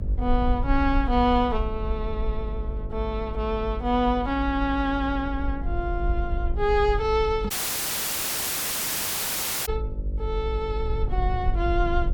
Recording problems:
electrical hum; 50 Hz, harmonics up to 600 Hz, SNR 12 dB
low-frequency rumble; below 58 Hz, SNR 4 dB
microphone bump; at 7.5 s; peak -1 dB vs average level
audio cutting out; at 7.5 s for 2 s

